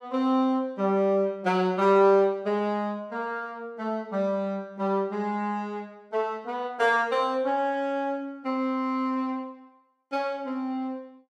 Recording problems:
none

